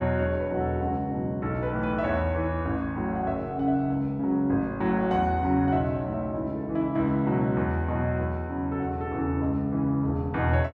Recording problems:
none

